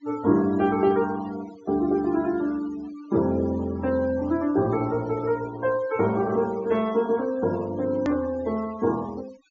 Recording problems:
low-pass filter; nothing above 7.2 kHz
denoising artefacts; signal-to-artefact ratio 20 dB
hard cut with a click; at 8 s

